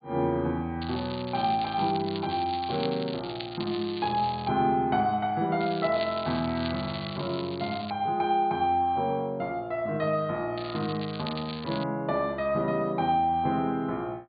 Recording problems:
treble cut off; nothing above 4.6 kHz
crackle; from 1 to 4.5 s, from 5.5 to 8 s and from 11 to 12 s; loose cable, SNR 13 dB

